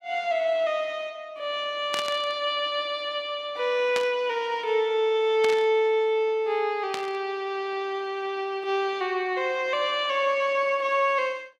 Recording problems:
burst of static; 4 times, first at 2 s; peak -1 dB vs average level

